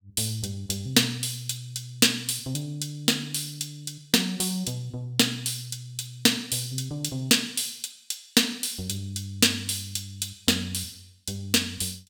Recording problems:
none

